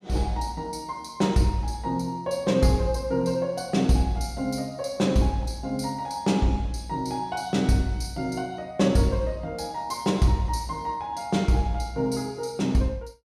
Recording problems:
none

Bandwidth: 15 kHz